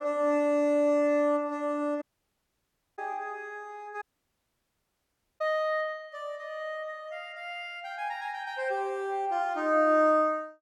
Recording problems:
audio cutting out; at 2 s for 1 s and at 4 s for 1.5 s

